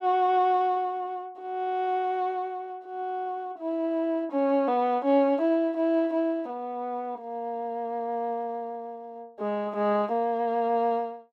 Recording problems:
none

